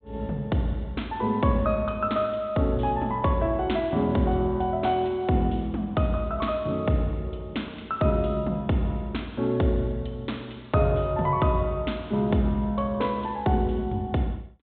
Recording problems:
treble missing; nothing above 4 kHz

